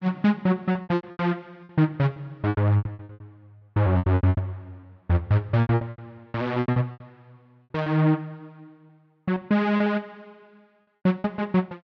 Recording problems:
packet loss; 18% of the sound replaced, filled with repeated pitch periods

